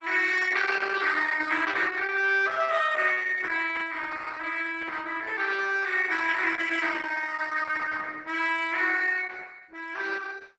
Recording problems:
lossy compression; Opus, log-spectral distance 5 dB, nothing above 7.8 kHz

